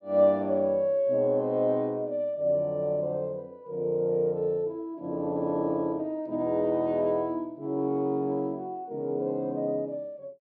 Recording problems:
none

